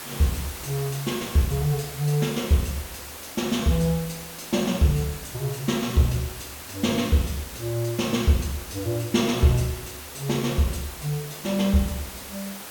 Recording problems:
hiss; slope -2 dB per octave, SNR 11 dB

